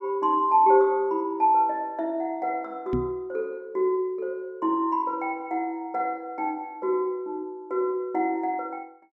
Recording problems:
knock on the microphone; at 3 s; peak +1 dB vs average level

